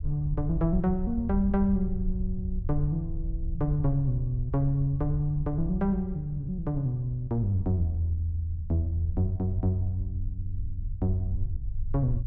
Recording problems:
low-frequency rumble; below 74 Hz, SNR 7 dB

